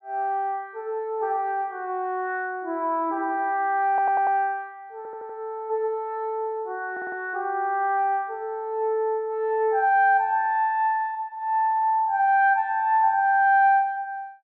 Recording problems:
audio stuttering; at 4 s, at 5 s and at 7 s

